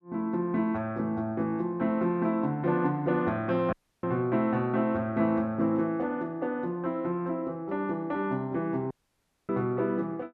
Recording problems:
audio cutting out; at 3.5 s and at 9 s for 0.5 s

